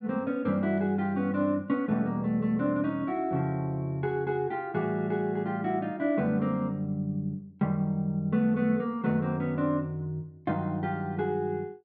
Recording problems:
treble missing; nothing above 7.5 kHz

